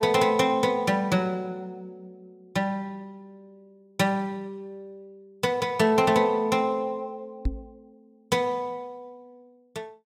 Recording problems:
microphone bump; at 7.5 s; peak +1 dB vs average level

